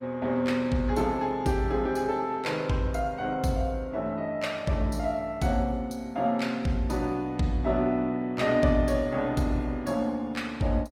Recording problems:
codec artefacts; Opus, log-spectral distance 2 dB, nothing above 17 kHz

